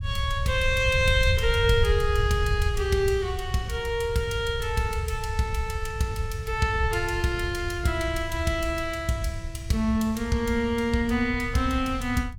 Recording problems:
low-frequency rumble; below 94 Hz, SNR 6 dB

